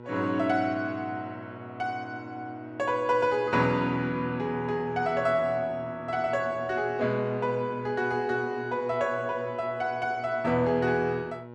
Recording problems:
hum; 60 Hz, harmonics up to 1.6 kHz, SNR 17 dB

